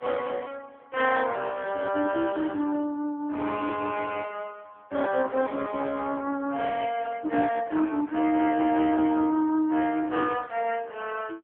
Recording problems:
phone line; 280 Hz to 3.3 kHz, AMR-NB

